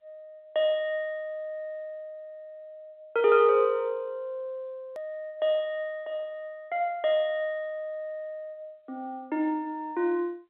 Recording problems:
telephone audio; 220 Hz to 3.9 kHz, G.711
edit click; at 5 s

